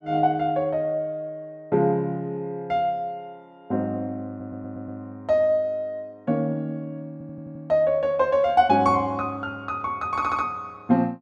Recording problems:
stutter; at 4.5 s, at 7 s and at 10 s

